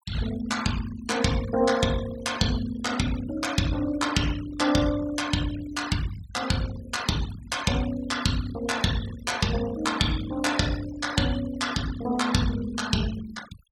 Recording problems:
denoising artefacts; signal-to-artefact ratio 14 dB

